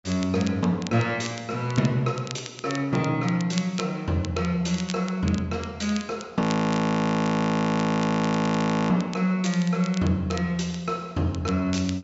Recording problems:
treble missing; nothing above 8 kHz
crackling; vinyl, SNR 17 dB
frozen audio; at 6.5 s for 2.5 s

